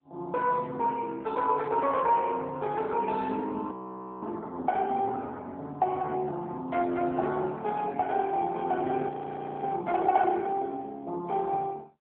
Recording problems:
telephone audio; 220 Hz to 3.6 kHz, AMR-NB
audio freezing; at 3.5 s and at 9 s for 0.5 s

